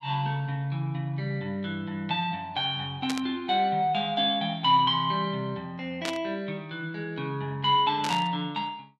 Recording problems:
static burst; at 3 s, at 6 s and at 8 s; peak -2 dB vs average level

